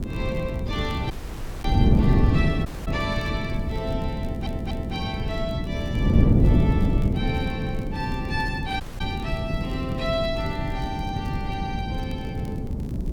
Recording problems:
background hiss; SNR 30 dB
wind on the microphone; below 210 Hz, SNR -6 dB
crackling; vinyl, SNR 23 dB
audio cutting out; at 1 s for 0.5 s, at 2.5 s and at 9 s
audio stuttering; at 4 s

